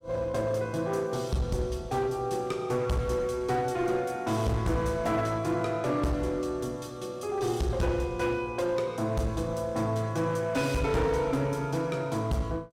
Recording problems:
distortion; hard clipping, uneven, signal-to-distortion ratio 11 dB

